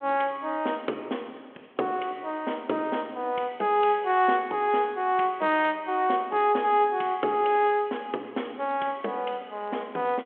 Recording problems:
phone line; 240 Hz to 3.4 kHz, G.726

